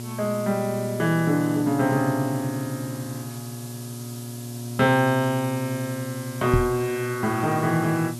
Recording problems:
hum; 60 Hz, harmonics up to 960 Hz, SNR 10 dB
hiss; SNR 16 dB
microphone thump; at 6.5 s; peak +7 dB vs average level

